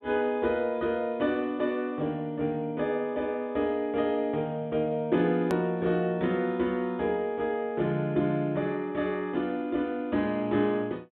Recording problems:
treble cut off; nothing above 4 kHz
hard cut with a click; at 5.5 s

